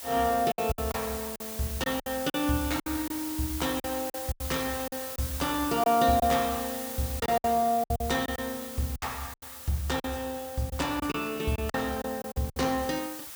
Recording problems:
hiss; SNR 8 dB
packet loss; 10% of the sound replaced, filled with silence

